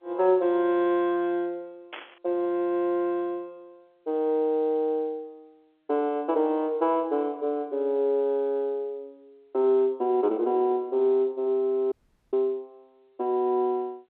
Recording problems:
telephone audio; 260 Hz to 3.5 kHz, G.711
burst of static; at 2 s; peak -8 dB vs average level
dropout; at 12 s

